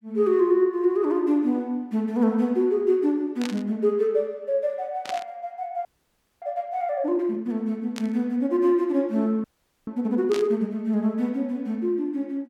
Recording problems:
burst of static; 4 times, first at 3.5 s; peak -5 dB vs average level
audio freezing; at 6 s for 0.5 s and at 9.5 s

